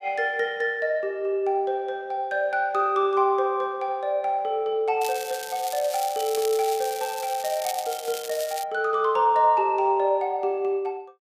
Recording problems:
crackle; from 5 to 8.5 s; loose cable, SNR 11 dB

